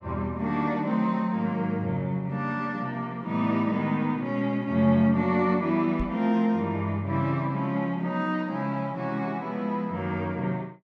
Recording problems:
microphone bump; at 6 s; peak -3 dB vs average level

